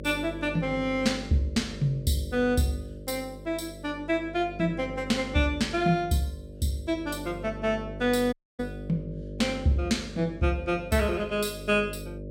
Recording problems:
hum; 50 Hz, harmonics up to 600 Hz, SNR 12 dB
dropout; at 8.5 s

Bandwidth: 16 kHz